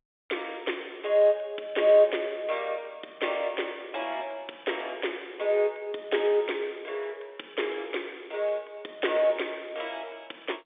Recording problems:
telephone audio; 300 Hz to 3.6 kHz, G.711

